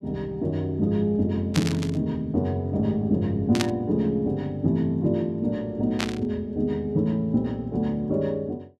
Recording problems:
static burst; at 1.5 s, at 3.5 s and at 6 s; peak +3 dB vs average level

